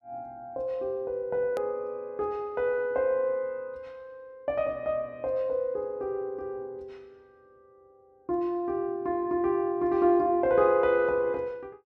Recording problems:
edit click; at 1.5 s

